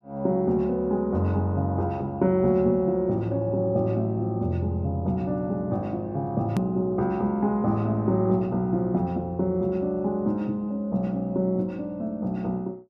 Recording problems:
hard cut with a click; at 6.5 s

